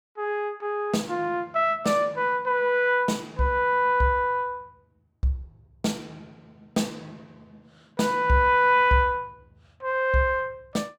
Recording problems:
none

